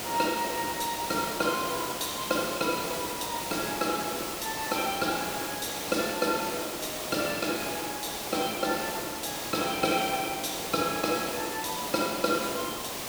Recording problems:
hiss; SNR 3 dB

